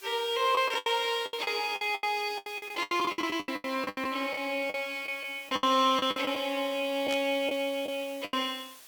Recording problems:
background hiss; slope +1 dB per octave, SNR 21 dB
packet loss; 16% of the sound replaced, filled with the last packet
static burst; at 7 s; peak -5 dB vs average level

